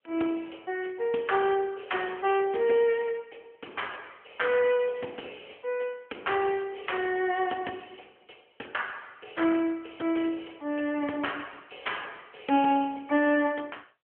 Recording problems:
phone line; 240 Hz to 3.3 kHz, AMR-NB

